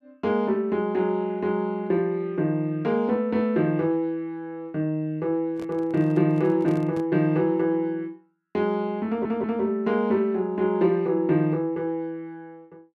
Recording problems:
handling noise; from 5.5 to 7 s; peak -11 dB vs average level
stutter; at 9 s

